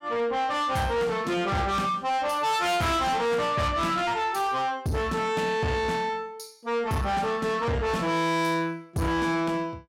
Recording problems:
distortion; soft clipping, signal-to-distortion ratio 7 dB

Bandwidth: 16 kHz